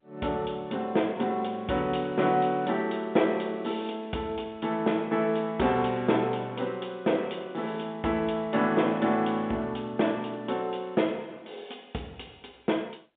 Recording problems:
telephone audio; 110 Hz to 3.6 kHz, G.711

